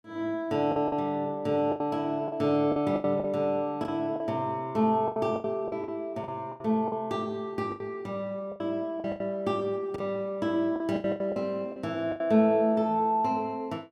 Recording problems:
packet loss; 11% of the sound replaced, filled with the last packet

